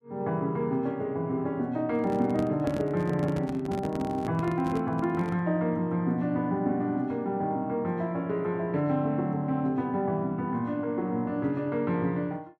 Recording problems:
microphone handling noise; from 2 to 5.5 s; peak -1 dB vs average level

